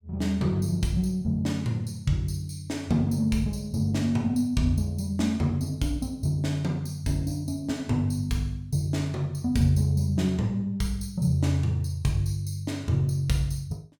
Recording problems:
none

